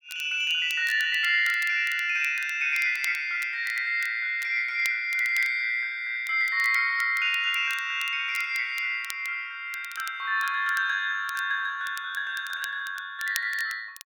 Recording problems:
crackle; vinyl, SNR 18 dB

